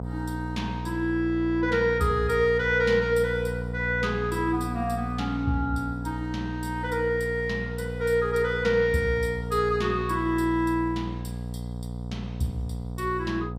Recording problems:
hum; 60 Hz, harmonics up to 960 Hz, SNR 7 dB

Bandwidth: 15 kHz